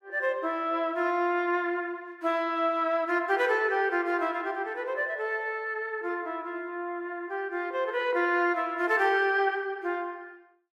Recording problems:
none

